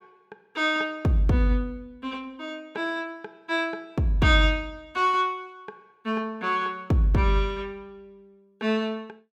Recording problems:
none

